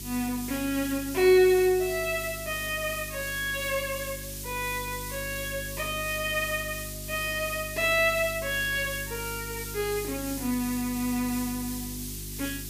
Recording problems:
hum; 50 Hz, harmonics up to 400 Hz, SNR 14 dB
hiss; SNR 9 dB

